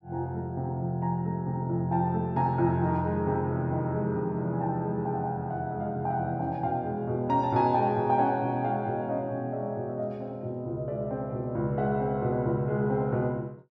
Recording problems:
none

